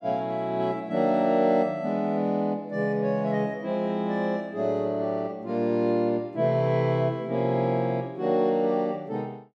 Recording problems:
none

